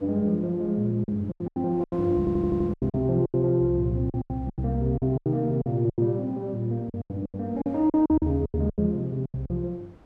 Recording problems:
wind noise; below 640 Hz, SNR 24 dB
packet loss; 16% of the sound replaced, filled with silence
audio stuttering; at 2 s

